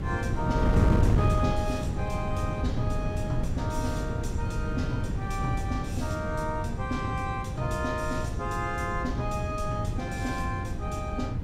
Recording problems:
mains hum; 50 Hz, harmonics up to 400 Hz, SNR 22 dB
rumble; below 110 Hz, SNR 9 dB
wind noise; below 190 Hz, SNR -2 dB

